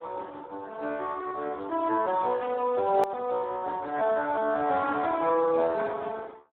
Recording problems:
phone line; 300 Hz to 3.6 kHz, Speex
edit click; at 3 s

